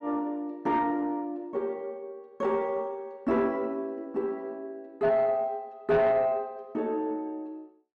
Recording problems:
distortion; soft clipping, signal-to-distortion ratio 10 dB

